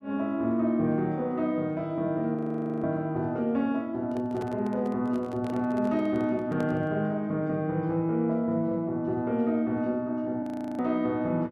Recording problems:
frozen audio; at 2.5 s and at 10 s
microphone handling noise; from 4 to 7 s; peak -7 dB vs average level

